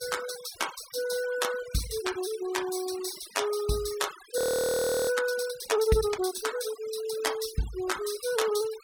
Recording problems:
denoising artefacts; signal-to-artefact ratio 13 dB
audio freezing; at 4.5 s for 0.5 s

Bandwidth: 16.5 kHz